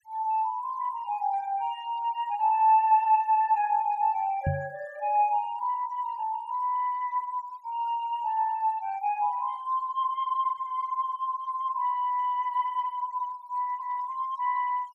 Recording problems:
noise reduction artefacts; signal-to-artefact ratio 27 dB
microphone thump; at 4.5 s; peak +3 dB vs average level

